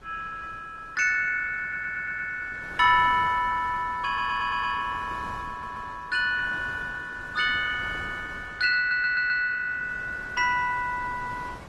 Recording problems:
lossy compression; Opus, log-spectral distance 3 dB, nothing above 13.1 kHz
wind on the microphone; below 1.1 kHz, SNR 19 dB
stutter; 4 times, first at 1.5 s

